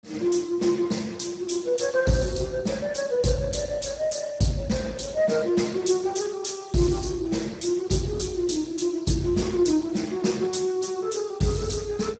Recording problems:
codec artefacts; Speex, log-spectral distance 5 dB, nothing above 7.8 kHz

